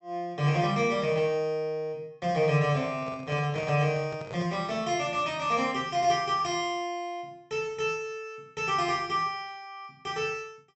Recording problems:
low-pass filter; nothing above 7.9 kHz
handling noise; from 3 to 4.5 s; peak -7 dB vs average level

